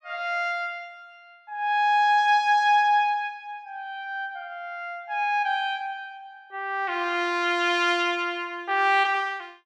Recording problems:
none

